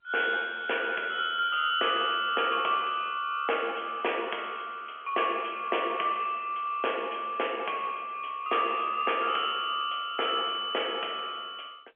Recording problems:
phone line; 320 Hz to 3.3 kHz, G.711

